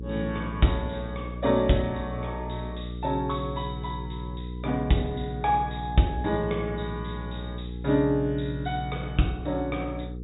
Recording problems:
low-pass filter; nothing above 4 kHz
hum; 60 Hz, harmonics up to 480 Hz, SNR 8 dB

